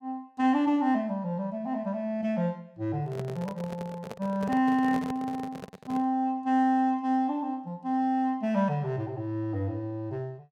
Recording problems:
handling noise; from 3 to 6 s; peak -4 dB vs average level

